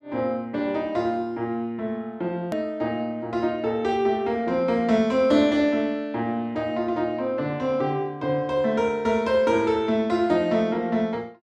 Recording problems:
click at an edit; at 2.5 s

